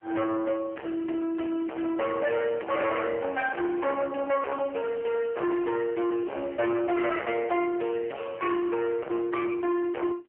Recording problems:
telephone audio; 280 Hz to 2.3 kHz, AMR-NB, then MP3
distortion; hard clipping, uneven, signal-to-distortion ratio 6 dB

